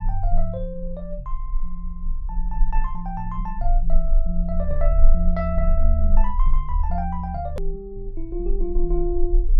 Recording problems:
low-frequency rumble; below 34 Hz, strongest tone 22 Hz, SNR -2 dB
hard cut with a click; at 7.5 s

